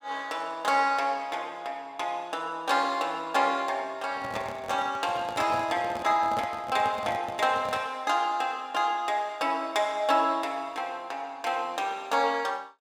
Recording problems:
handling noise; from 4 to 8 s; peak -5 dB vs average level

